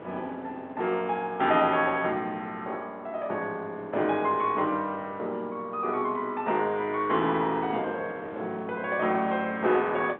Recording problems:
phone line; 240 Hz to 3.8 kHz, G.711
wind noise; below 930 Hz, SNR 19 dB

